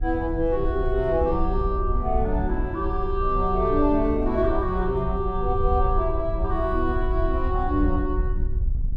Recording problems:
wind noise; below 66 Hz, SNR 4 dB

